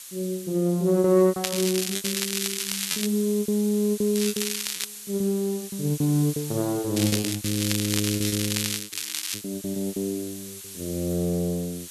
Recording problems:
background hiss; slope +4 dB per octave, SNR 11 dB
packet loss; 14% of the sound replaced, filled with repeated pitch periods
crackle; from 1.5 to 3 s, at 4 s and from 7 to 9.5 s; loose cable, SNR 2 dB

